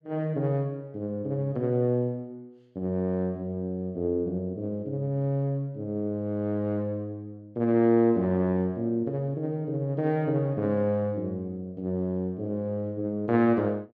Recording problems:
none

